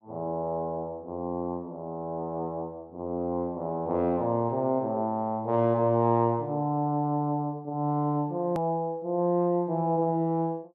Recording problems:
edit click; at 8.5 s

